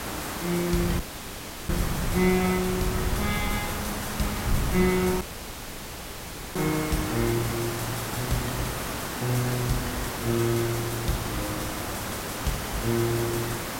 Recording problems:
background hiss; slope -4 dB per octave, SNR 3 dB
wind on the microphone; below 140 Hz, SNR 9 dB
dropout; at 1 s for 0.5 s and at 5 s for 1.5 s

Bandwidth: 16 kHz